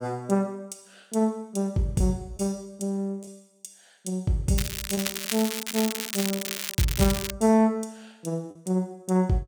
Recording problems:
packet loss; 1.4% of the sound replaced, filled with the last packet
crackling; from 4.5 to 7.5 s; loose cable, SNR 3 dB

